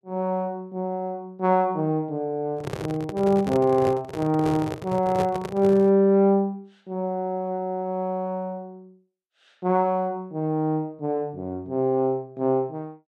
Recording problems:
handling noise; from 2.5 to 6 s; peak -1 dB vs average level

